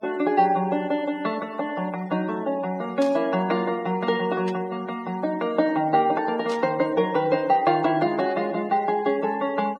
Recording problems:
noise reduction artefacts; signal-to-artefact ratio 22 dB
static burst; at 3 s, at 4.5 s and at 6.5 s; peak -10 dB vs average level

